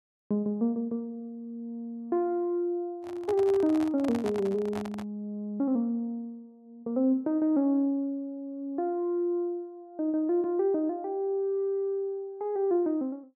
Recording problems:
microphone handling noise; from 3 to 5 s; peak -5 dB vs average level

